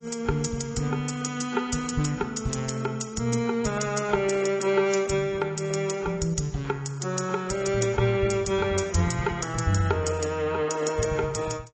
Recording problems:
codec artefacts; AAC, log-spectral distance 5 dB

